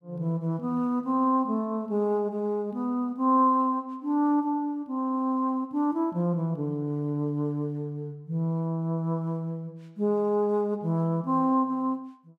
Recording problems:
none

